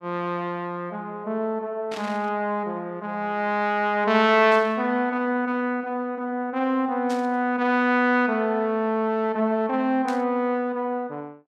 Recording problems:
static burst; 4 times, first at 2 s; peak -9 dB vs average level

